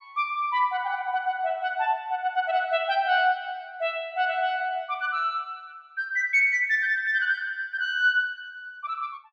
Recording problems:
none

